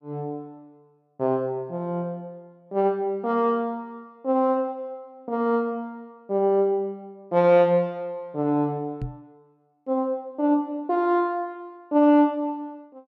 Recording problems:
microphone bump; at 9 s; peak -4 dB vs average level

